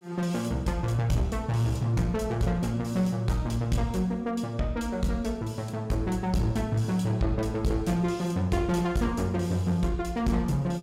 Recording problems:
distorted audio; hard clipping, uneven, signal-to-distortion ratio 11 dB

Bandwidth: 16.5 kHz